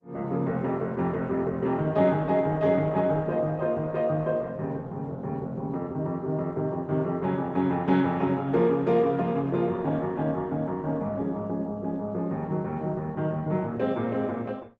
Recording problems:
lossy codec; Opus, log-spectral distance 2 dB

